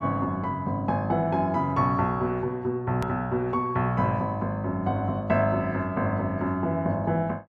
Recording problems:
hard cut with a click; at 3 s

